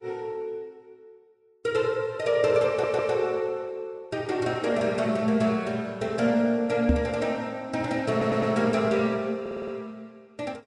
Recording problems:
codec artefacts; Vorbis, log-spectral distance 2 dB, nothing above 9.5 kHz
stutter; at 2.5 s, at 8 s and at 9.5 s
microphone thump; at 7 s; peak +6 dB vs average level

